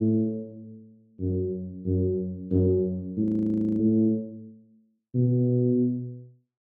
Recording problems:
frozen audio; at 3 s for 0.5 s

